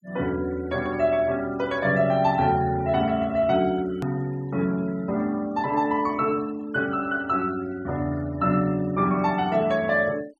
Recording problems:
denoising artefacts; signal-to-artefact ratio 24 dB
hard cut with a click; at 4 s

